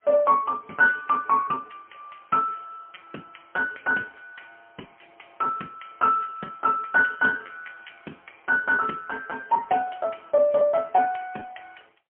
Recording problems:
telephone audio; 280 Hz to 3.2 kHz, AMR-NB, then MP3
lost packets; 9% of the sound replaced, filled with repeated pitch periods

